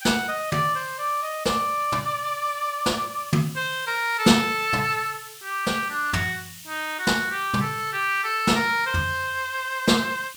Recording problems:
hiss; SNR 16 dB

